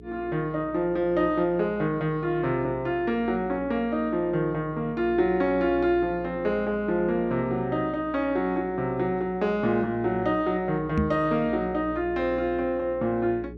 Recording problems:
hum; 60 Hz, harmonics up to 420 Hz, SNR 18 dB
knock on the microphone; at 11 s; peak +4 dB vs average level

